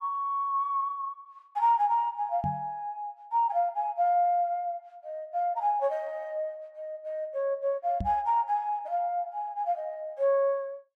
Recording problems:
microphone bump; at 2.5 s and at 8 s; peak -1 dB vs average level

